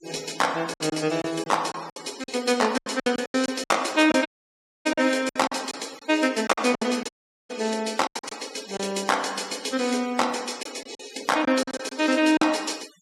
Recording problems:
denoising artefacts; signal-to-artefact ratio 18 dB
lost packets; 11% of the sound replaced, filled with silence
dropout; at 4.5 s for 0.5 s and at 7 s

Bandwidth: 14.5 kHz